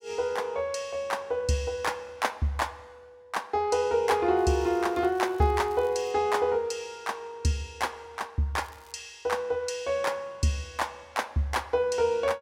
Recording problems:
crackle; from 4.5 to 6 s and at 8.5 s; loose cable, SNR 27 dB

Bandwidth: 16.5 kHz